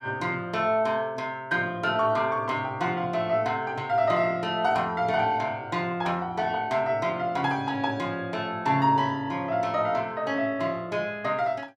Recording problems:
none

